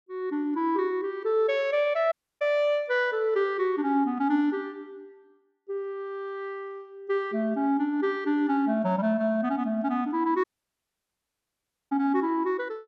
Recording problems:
dropout; at 2 s and at 10 s for 1.5 s

